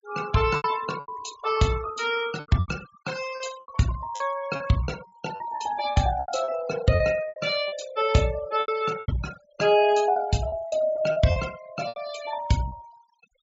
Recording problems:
treble missing; nothing above 8 kHz
noise reduction artefacts; signal-to-artefact ratio 16 dB
lost packets; 12% of the sound replaced, filled with repeated pitch periods

